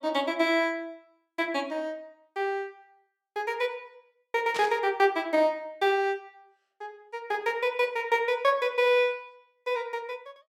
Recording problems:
burst of static; at 4.5 s; peak -4 dB vs average level

